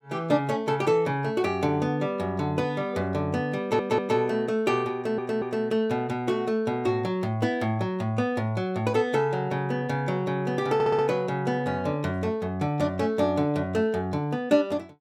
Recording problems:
audio stuttering; at 3.5 s, at 5 s and at 11 s

